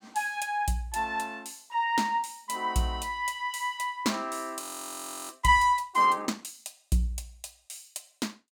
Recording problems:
frozen audio; at 4.5 s for 0.5 s

